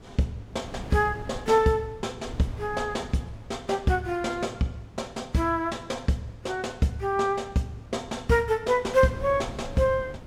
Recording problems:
wind on the microphone; below 300 Hz, SNR 17 dB

